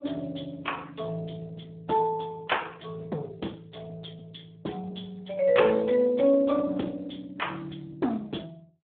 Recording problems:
phone line; 190 Hz to 3.5 kHz, Speex

